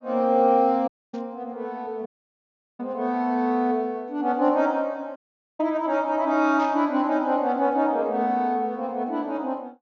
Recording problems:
treble missing; nothing above 7 kHz
dropout; at 1 s, at 2 s for 0.5 s and at 5 s
static burst; at 1 s and at 6.5 s; peak -13 dB vs average level

